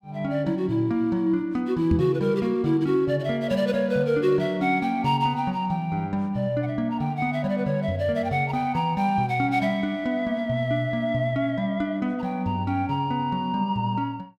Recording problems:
microphone thump; at 2 s; peak +4 dB vs average level

